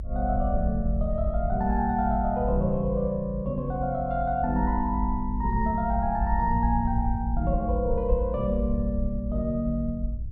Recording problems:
rumble; below 64 Hz, strongest tone 52 Hz, SNR 4 dB

